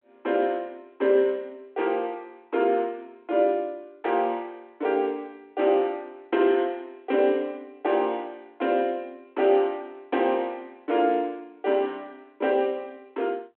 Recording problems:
phone line; 260 Hz to 3.5 kHz, G.726

